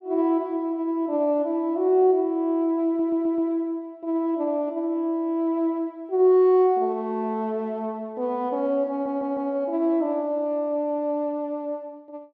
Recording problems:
audio stuttering; at 3 s and at 9 s

